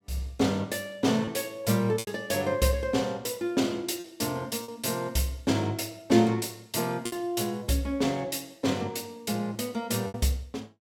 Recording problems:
packet loss; 3% of the sound replaced, filled with repeated pitch periods

